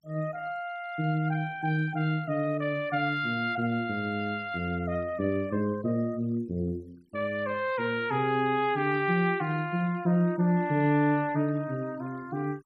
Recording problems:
noise reduction artefacts; signal-to-artefact ratio 26 dB

